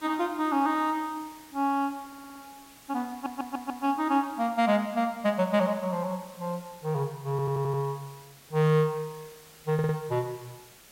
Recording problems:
hiss; slope -1 dB per octave, SNR 22 dB
stutter; 4 times, first at 2 s

